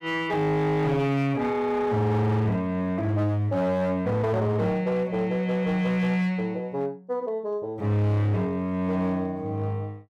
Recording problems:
distorted audio; hard clipping, signal-to-distortion ratio 11 dB

